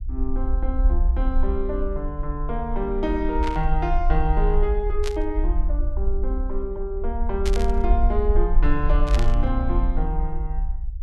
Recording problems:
rumble; below 52 Hz, SNR -2 dB
burst of static; 4 times, first at 3.5 s; peak 0 dB vs average level

